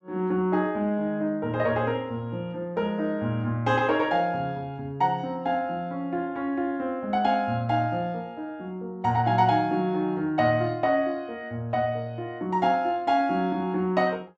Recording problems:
none

